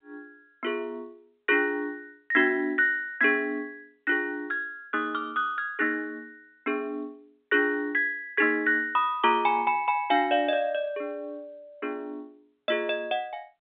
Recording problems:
telephone audio; 240 Hz to 3.6 kHz, G.711

